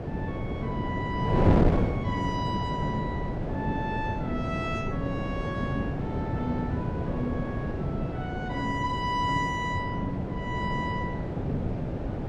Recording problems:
wind on the microphone; below 410 Hz, SNR -3 dB

